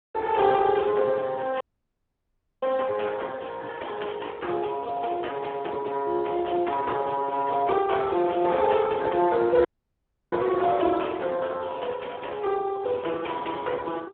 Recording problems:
phone line; 300 Hz to 3.5 kHz, Speex
audio cutting out; at 1.5 s for 1 s and at 9.5 s for 0.5 s

